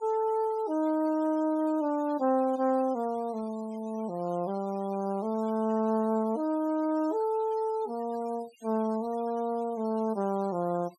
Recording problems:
noise reduction artefacts; signal-to-artefact ratio 25 dB

